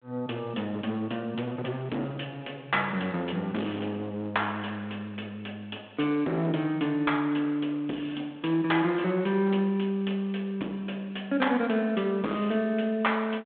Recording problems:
phone line; 170 Hz to 3.5 kHz, G.726
distorted audio; hard clipping, signal-to-distortion ratio 13 dB

